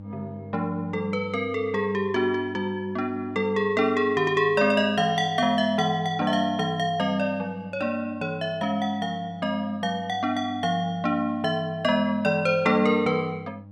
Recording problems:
hum; 50 Hz, harmonics up to 800 Hz, SNR 19 dB

